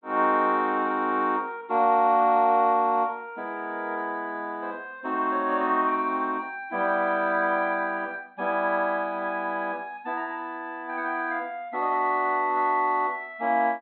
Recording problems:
treble missing; nothing above 4 kHz

